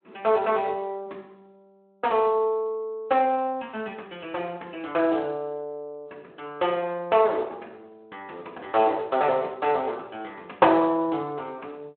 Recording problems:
phone line; 280 Hz to 3.7 kHz, Speex

